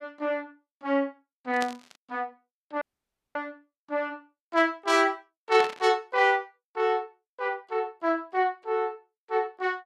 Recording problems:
static burst; at 1.5 s and at 5.5 s; peak -3 dB vs average level
audio cutting out; at 3 s for 0.5 s

